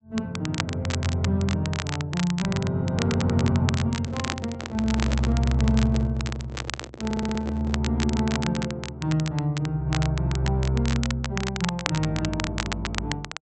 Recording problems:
treble missing; nothing above 7.9 kHz
crackling; vinyl, SNR 9 dB
microphone handling noise; from 4 to 8 s; peak -4 dB vs average level
stutter; at 7 s

